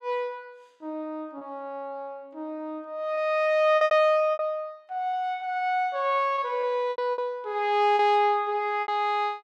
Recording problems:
lost packets; 6% of the sound replaced, filled with repeated pitch periods

